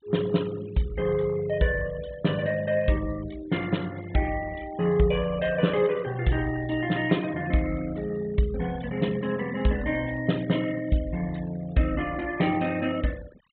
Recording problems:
treble missing; nothing above 4 kHz
denoising artefacts; signal-to-artefact ratio 19 dB

